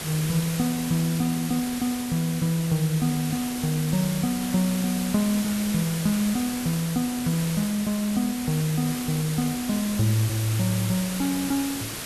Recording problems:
background hiss; slope -2 dB per octave, SNR 7 dB

